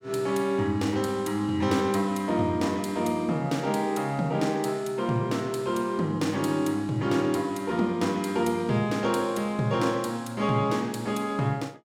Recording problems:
none

